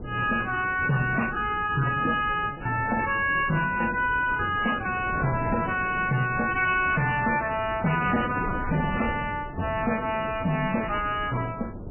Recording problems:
codec artefacts; MP3, then MP3, log-spectral distance 5 dB, nothing above 2.7 kHz
distortion; hard clipping, signal-to-distortion ratio 11 dB
wind noise; below 350 Hz, SNR 12 dB
packet loss; 10% of the sound replaced, filled with repeated pitch periods

